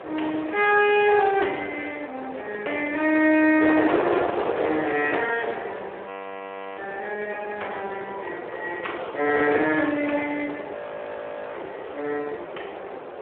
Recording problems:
telephone audio; 320 Hz to 3.2 kHz, Speex
wind noise; below 900 Hz, SNR 8 dB
frozen audio; at 6 s for 0.5 s and at 11 s for 1 s

